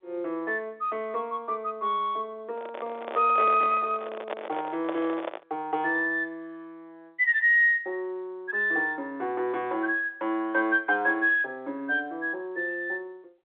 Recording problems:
telephone audio; 300 Hz to 3.7 kHz, G.711
microphone handling noise; from 2.5 to 5.5 s; peak -3 dB vs average level

